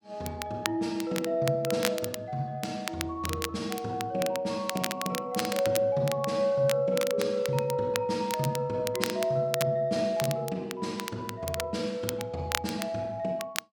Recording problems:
crackling; vinyl, SNR 8 dB

